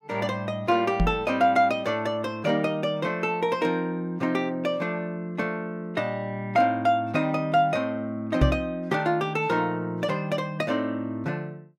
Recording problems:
microphone thump; at 1 s and at 8.5 s; peak +8 dB vs average level

